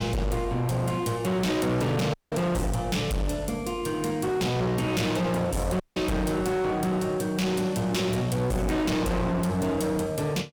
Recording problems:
distortion; hard clipping, signal-to-distortion ratio 6 dB
dropout; at 2 s and at 6 s

